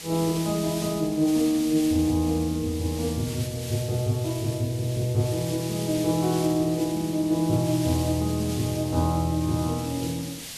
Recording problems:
hiss; SNR 12 dB

